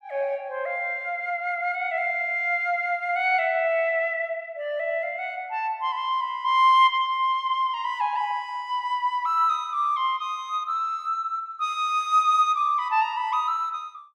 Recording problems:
none

